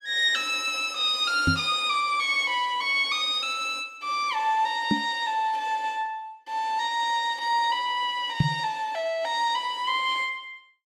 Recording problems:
knock on the microphone; at 1.5 s, at 5 s and at 8.5 s; peak +7 dB vs average level

